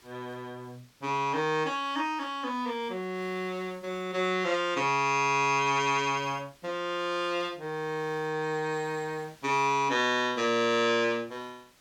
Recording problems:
background hiss; slope -1 dB per octave, SNR 29 dB

